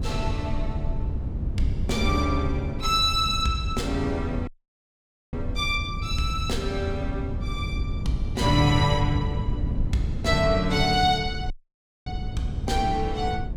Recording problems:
wind noise; below 110 Hz, SNR 5 dB
audio cutting out; at 4.5 s for 1 s and at 12 s for 0.5 s

